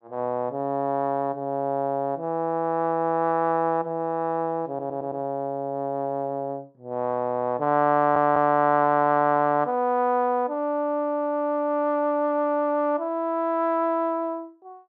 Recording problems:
stutter; at 4.5 s and at 8 s

